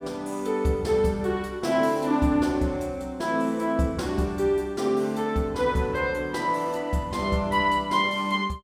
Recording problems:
none

